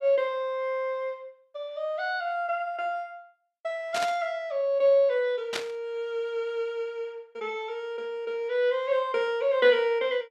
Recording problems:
static burst; at 4 s and at 5.5 s; peak +1 dB vs average level

